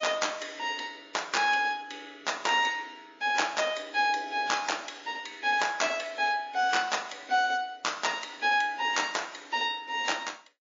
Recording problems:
codec artefacts; MP3, log-spectral distance 6 dB, nothing above 6.5 kHz

